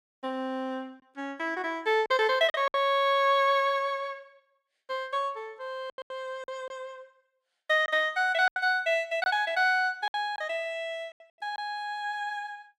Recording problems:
lost packets; 6% of the sound replaced, filled with silence

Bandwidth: 15.5 kHz